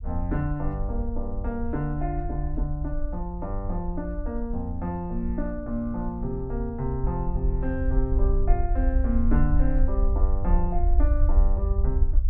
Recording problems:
rumble; below 56 Hz, SNR -2 dB

